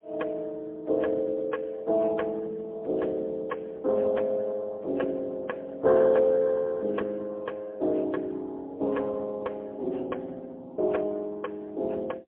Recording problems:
phone line; 280 Hz to 2.2 kHz, AMR-NB, then MP3

